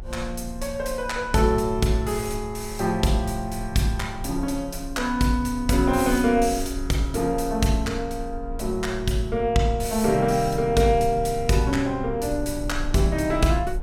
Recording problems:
rumble; below 58 Hz, strongest tone 30 Hz, SNR 13 dB

